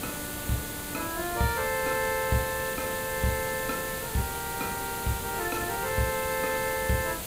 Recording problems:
hum; 60 Hz, harmonics up to 660 Hz, SNR 22 dB
background hiss; slope -3 dB per octave, SNR 4 dB

